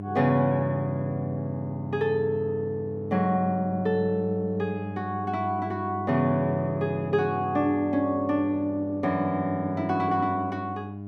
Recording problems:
electrical hum; 50 Hz, harmonics up to 800 Hz, SNR 9 dB

